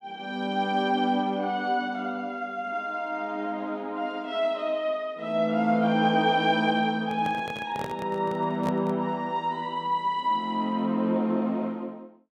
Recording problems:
microphone handling noise; from 7 to 9 s; peak -4 dB vs average level

